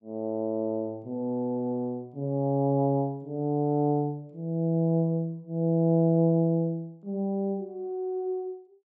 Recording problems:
none

